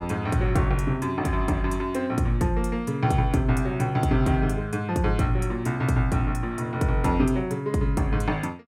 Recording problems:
none

